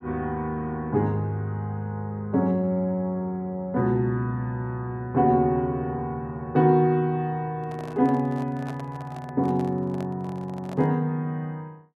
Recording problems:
handling noise; from 7.5 to 11 s; peak -10 dB vs average level

